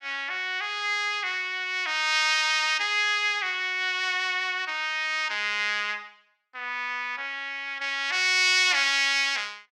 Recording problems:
none

